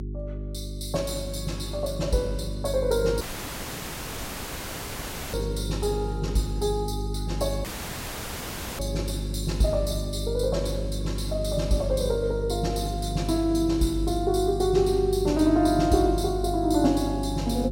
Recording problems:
hum; 50 Hz, harmonics up to 400 Hz, SNR 6 dB
dropout; at 3 s for 2 s and at 7.5 s for 1 s

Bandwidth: 16 kHz